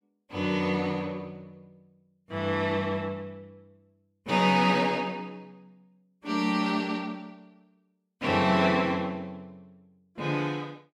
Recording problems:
none

